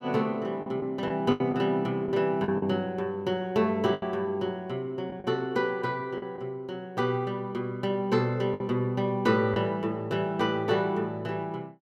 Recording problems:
packet loss; 5% of the sound replaced, filled with the last packet

